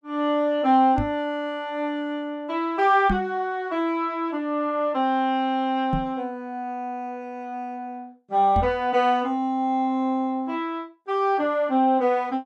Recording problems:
microphone bump; 4 times, first at 1 s; peak +1 dB vs average level

